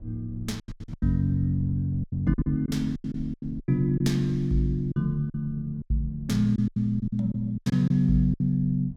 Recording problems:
low-frequency rumble; below 86 Hz, SNR 20 dB
lost packets; 14% of the sound replaced, filled with silence

